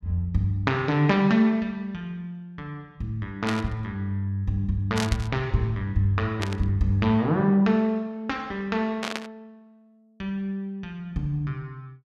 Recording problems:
burst of static; 4 times, first at 3.5 s; peak -1 dB vs average level

